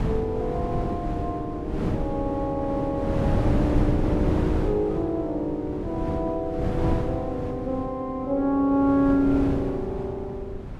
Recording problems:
wind noise; below 250 Hz, SNR 3 dB

